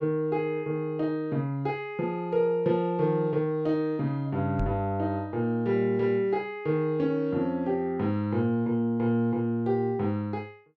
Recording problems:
microphone bump; at 4.5 s; peak -1 dB vs average level

